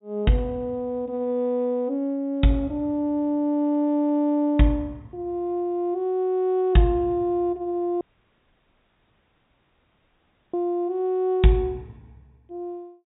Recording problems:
low-pass filter; nothing above 4 kHz
audio cutting out; at 8 s for 2.5 s

